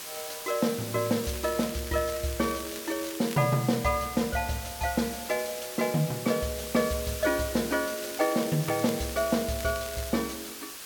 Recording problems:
hiss; slope 0 dB per octave, SNR 9 dB
crackling; from 1 to 3.5 s and from 8 to 10 s; loose cable, SNR 16 dB

